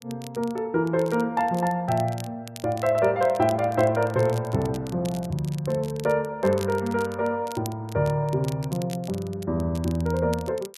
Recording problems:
crackling; vinyl, SNR 20 dB

